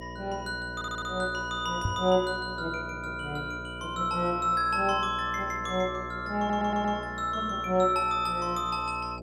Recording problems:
electrical hum; 60 Hz, harmonics up to 660 Hz, SNR 13 dB
audio stuttering; at 0.5 s and at 6.5 s
microphone bump; at 2 s; peak +2 dB vs average level

